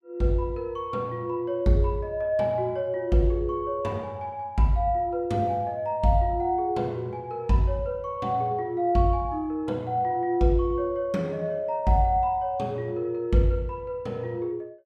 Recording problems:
none

